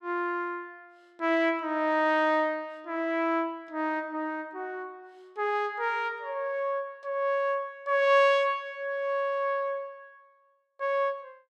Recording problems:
none

